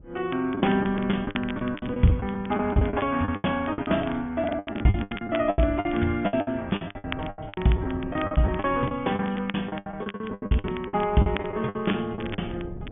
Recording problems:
treble cut off; nothing above 3.4 kHz
lossy codec; Vorbis, log-spectral distance 2 dB
wind on the microphone; below 230 Hz, SNR 17 dB
crackling; vinyl, SNR 17 dB
lost packets; 21% of the sound replaced, filled with the last packet

